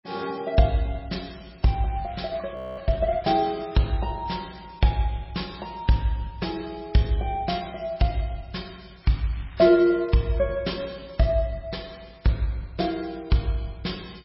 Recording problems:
codec artefacts; MP3, log-spectral distance 5 dB, nothing above 5.5 kHz
crackling; from 2 to 4 s and from 9 to 10 s; loose cable, SNR 24 dB
audio freezing; at 2.5 s

